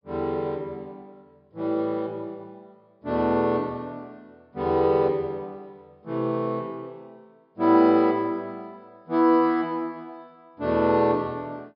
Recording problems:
treble cut off; nothing above 5.5 kHz

